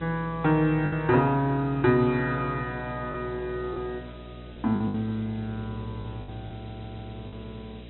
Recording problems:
treble cut off; nothing above 4 kHz
electrical hum; 60 Hz, harmonics up to 660 Hz, SNR 16 dB
hiss; SNR 27 dB
lost packets; 5% of the sound replaced, filled with the last packet
audio stuttering; at 6.5 s

